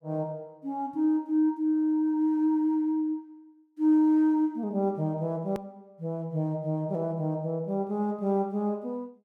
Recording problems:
click at an edit; at 5.5 s

